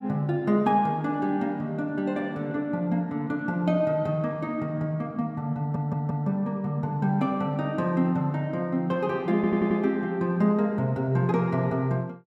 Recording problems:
stutter; at 5.5 s and at 9.5 s

